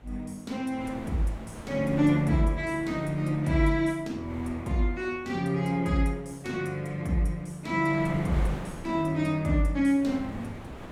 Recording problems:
wind noise; below 850 Hz, SNR 16 dB

